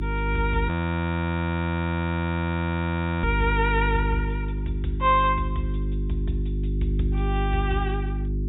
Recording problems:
treble cut off; nothing above 4 kHz
hum; 50 Hz, harmonics up to 500 Hz, SNR -1 dB
audio freezing; at 0.5 s for 2.5 s

